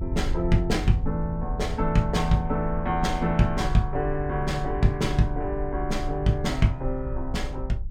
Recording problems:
low-frequency rumble; below 60 Hz, strongest tone 22 Hz, SNR 8 dB

